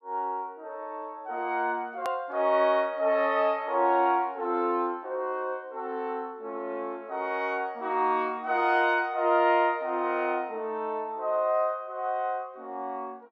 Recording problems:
edit click; at 2 s

